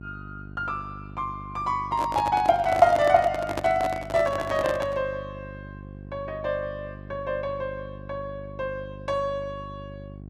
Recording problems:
electrical hum; 50 Hz, harmonics up to 750 Hz, SNR 15 dB
microphone handling noise; from 2 to 5 s; peak +1 dB vs average level

